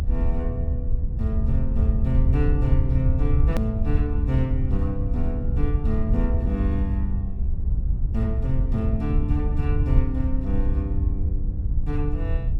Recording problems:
low-frequency rumble; below 76 Hz, SNR -4 dB
hard cut with a click; at 3.5 s

